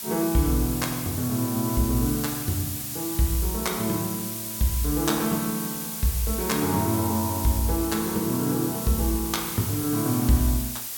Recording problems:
background hiss; slope +1 dB per octave, SNR 5 dB

